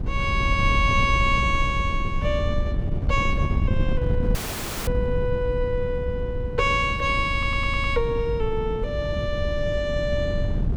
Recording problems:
hum; 60 Hz, harmonics up to 360 Hz, SNR 20 dB
wind on the microphone; below 120 Hz, SNR 3 dB
audio cutting out; at 4.5 s for 0.5 s
audio stuttering; at 7.5 s

